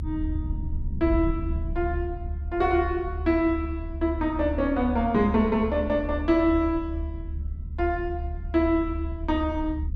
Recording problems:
rumble; below 74 Hz, SNR 7 dB

